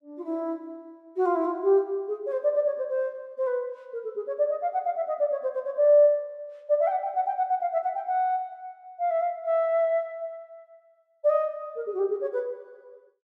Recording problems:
none

